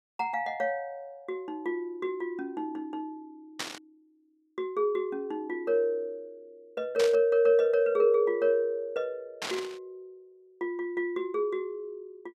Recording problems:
burst of static; at 3.5 s, at 7 s and at 9.5 s; peak 0 dB vs average level

